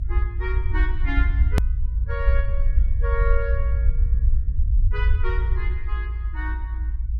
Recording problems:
low-frequency rumble; below 62 Hz, SNR -9 dB
hard cut with a click; at 1.5 s

